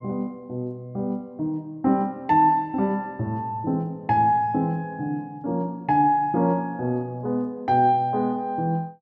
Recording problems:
none

